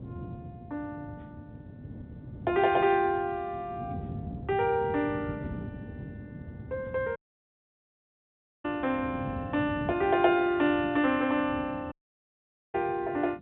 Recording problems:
phone line; 150 Hz to 3.9 kHz, G.711
wind noise; below 250 Hz, SNR 13 dB
audio cutting out; at 7 s for 1.5 s and at 12 s for 1 s

